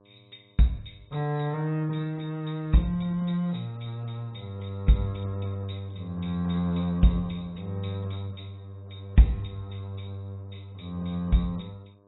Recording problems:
lossy codec; AAC, log-spectral distance 7 dB, nothing above 3.8 kHz
hum; 50 Hz, harmonics up to 1.3 kHz, SNR 32 dB

